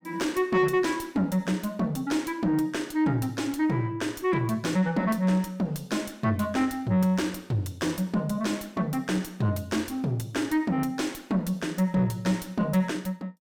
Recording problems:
distortion; soft clipping, signal-to-distortion ratio 11 dB

